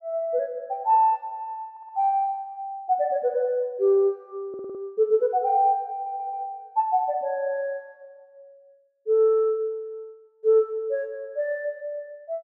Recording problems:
audio stuttering; at 1.5 s, at 4.5 s and at 6 s

